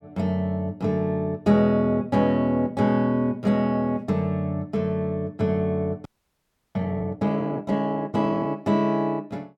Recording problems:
audio freezing; at 6 s for 0.5 s

